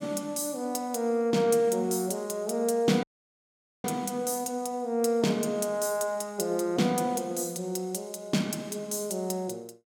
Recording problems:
audio cutting out; at 3 s for 1 s

